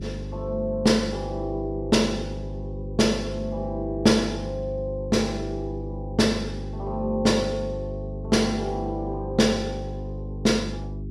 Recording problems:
hum; 50 Hz, harmonics up to 400 Hz, SNR 9 dB

